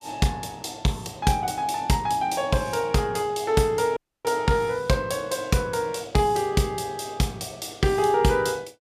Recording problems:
dropout; at 4 s

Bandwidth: 14.5 kHz